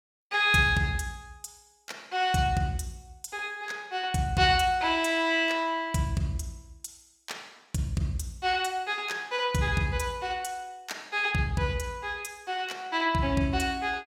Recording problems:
none

